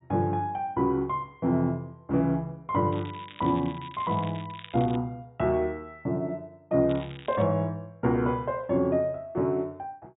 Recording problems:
treble missing; nothing above 4 kHz
crackling; from 3 to 5 s and at 7 s; loose cable, SNR 19 dB

